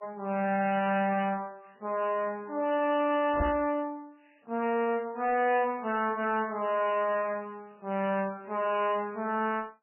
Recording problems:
codec artefacts; MP3, then MP3, log-spectral distance 3 dB, nothing above 2.9 kHz
distortion; hard clipping, uneven, signal-to-distortion ratio 11 dB
microphone thump; at 3.5 s; peak +2 dB vs average level

